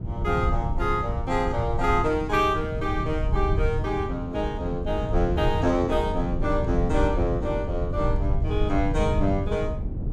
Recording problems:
low-frequency rumble; below 94 Hz, SNR 4 dB
wind on the microphone; below 230 Hz, SNR 10 dB

